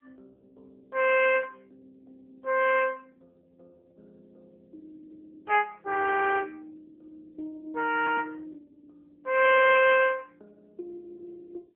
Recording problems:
phone line; 370 Hz to 3.1 kHz, AMR-NB

